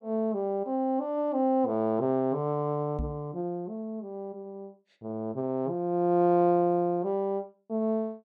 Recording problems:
microphone bump; at 3 s; peak -2 dB vs average level

